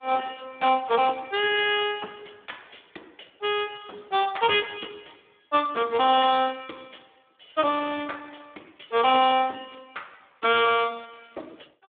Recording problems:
phone line; 220 Hz to 3.6 kHz, Speex

